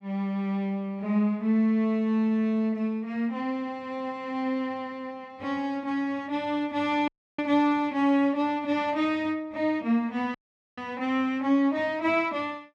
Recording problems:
dropout; at 7 s and at 10 s

